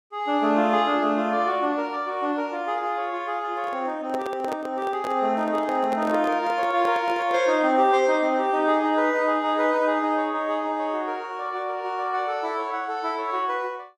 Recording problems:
handling noise; from 3.5 to 7.5 s; peak -4 dB vs average level

